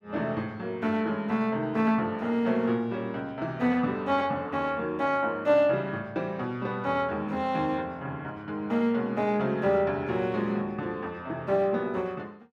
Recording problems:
none

